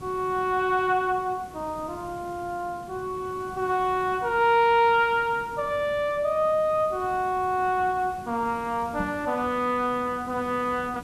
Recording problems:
hiss; SNR 20 dB
microphone bump; at 9 s; peak -3 dB vs average level

